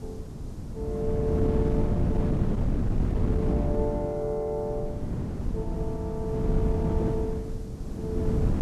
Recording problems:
background hiss; SNR 26 dB
wind noise; below 220 Hz, SNR -3 dB

